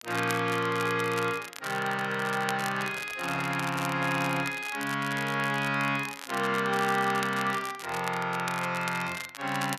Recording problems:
crackle; vinyl, SNR 12 dB
microphone handling noise; from 3 to 4.5 s; peak -9 dB vs average level

